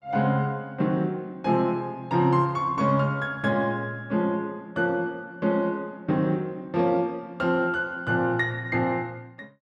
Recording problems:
none

